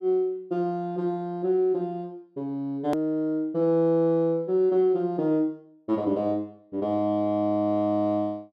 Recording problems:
hard cut with a click; at 3 s

